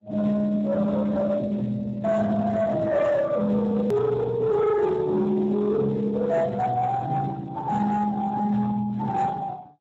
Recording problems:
lossy compression; MP3, then Speex, log-spectral distance 3 dB, nothing above 13.1 kHz
distortion; hard clipping, signal-to-distortion ratio 11 dB
edit click; at 4 s

